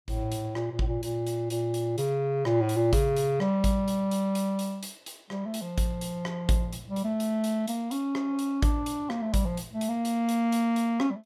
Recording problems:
none

